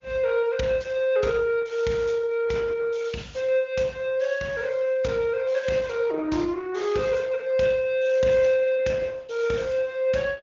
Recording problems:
low-pass filter; nothing above 7.1 kHz
codec artefacts; Opus, log-spectral distance 3 dB

